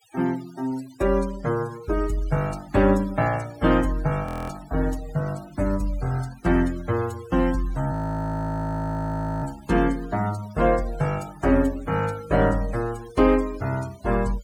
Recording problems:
noise reduction artefacts; signal-to-artefact ratio 20 dB
audio freezing; at 4.5 s and at 8 s for 1.5 s

